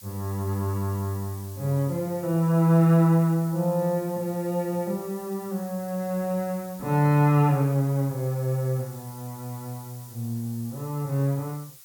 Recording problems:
hiss; slope +4 dB per octave, SNR 19 dB

